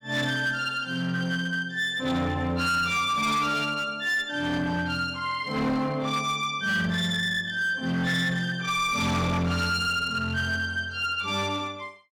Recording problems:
distortion; hard clipping, uneven, signal-to-distortion ratio 10 dB

